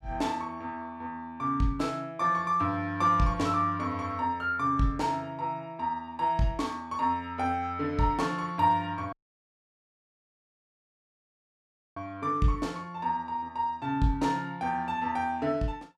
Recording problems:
dropout; at 9 s for 3 s

